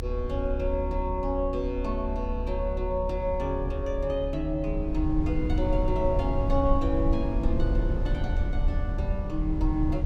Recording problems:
low-frequency rumble; below 74 Hz, SNR 1 dB

